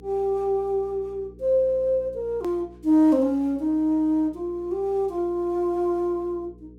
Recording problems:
electrical hum; 60 Hz, harmonics up to 480 Hz, SNR 24 dB
edit click; at 2.5 s

